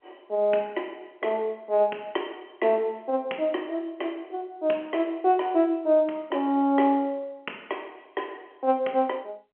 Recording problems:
phone line; 240 Hz to 3.2 kHz, G.711

